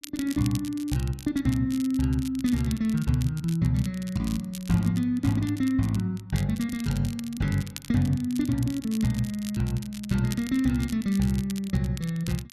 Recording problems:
crackling; vinyl, SNR 17 dB

